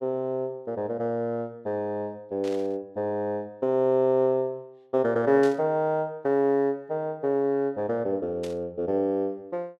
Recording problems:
static burst; at 2.5 s, at 5.5 s and at 8.5 s; peak -11 dB vs average level

